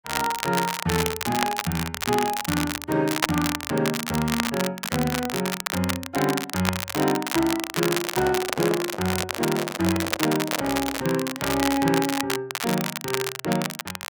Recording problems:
crackling; vinyl, SNR 3 dB
handling noise; from 8 to 11 s; peak 0 dB vs average level

